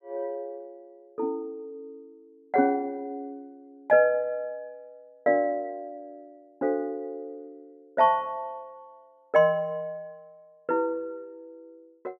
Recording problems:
none

